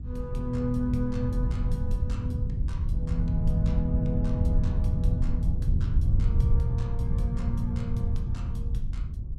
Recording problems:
wind on the microphone; below 96 Hz, SNR -4 dB

